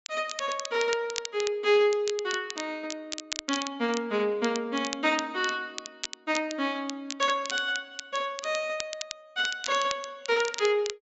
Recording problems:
treble missing; nothing above 8 kHz
crackle; vinyl, SNR 10 dB

